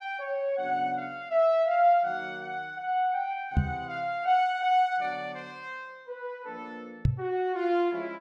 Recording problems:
microphone bump; at 3.5 s and at 7 s; peak +7 dB vs average level

